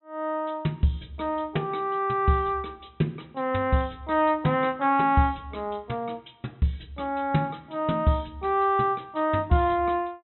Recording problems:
treble missing; nothing above 3.9 kHz

